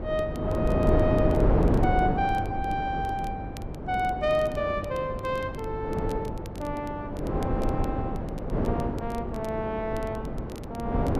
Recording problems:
hum; 50 Hz, harmonics up to 350 Hz, SNR 14 dB
wind on the microphone; below 430 Hz, SNR -1 dB
crackling; vinyl, SNR 23 dB

